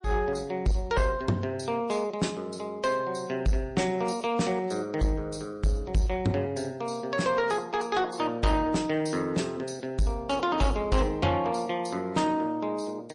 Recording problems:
codec artefacts; MP3, then MP3, log-spectral distance 3 dB
distortion; soft clipping, signal-to-distortion ratio 11 dB

